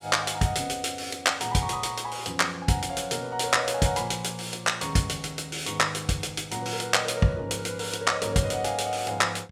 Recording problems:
none

